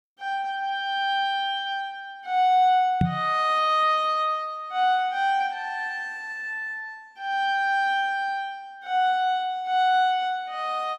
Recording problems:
microphone bump; at 3 s; peak +5 dB vs average level

